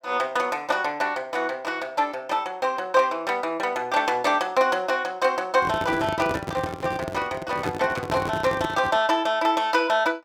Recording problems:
microphone handling noise; from 5.5 to 9 s; peak -2 dB vs average level

